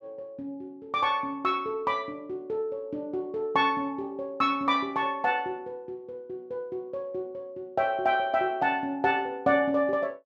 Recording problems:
none

